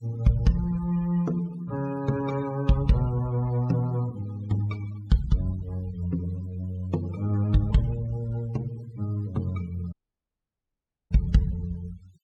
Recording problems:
noise reduction artefacts; signal-to-artefact ratio 22 dB
audio cutting out; at 10 s for 1 s

